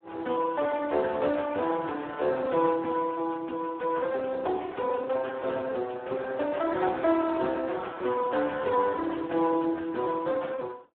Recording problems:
telephone audio; 240 Hz to 2 kHz, Speex

